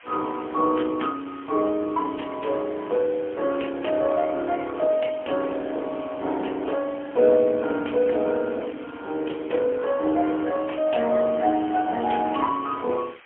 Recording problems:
telephone audio; 240 Hz to 3.3 kHz, AMR-NB, then MP3
background hiss; SNR 22 dB

